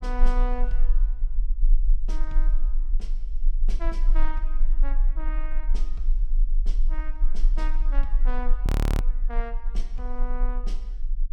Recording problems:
low-frequency rumble; below 32 Hz, strongest tone 18 Hz, SNR -12 dB
audio freezing; at 8.5 s

